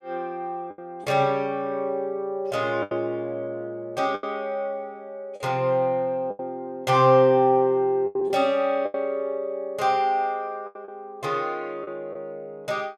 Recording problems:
lost packets; 6% of the sound replaced, filled with the last packet

